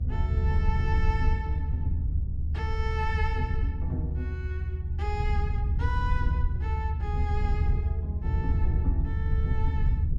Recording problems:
low-frequency rumble; below 80 Hz, SNR -8 dB

